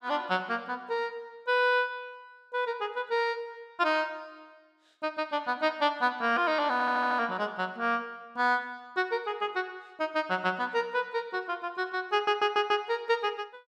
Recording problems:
audio stuttering; at 6.5 s and at 12 s

